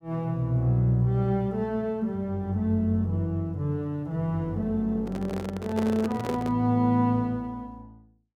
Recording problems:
microphone handling noise; from 5 to 6.5 s; peak -2 dB vs average level

